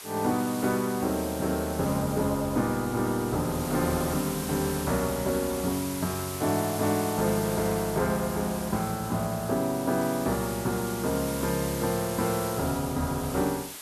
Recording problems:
hiss; slope +1 dB per octave, SNR 9 dB

